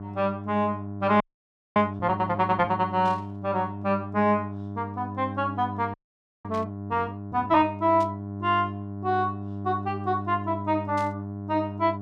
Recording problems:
hum; 50 Hz, harmonics up to 1.1 kHz, SNR 9 dB
frozen audio; at 1 s for 0.5 s and at 6 s for 0.5 s
static burst; 4 times, first at 3 s; peak -13 dB vs average level

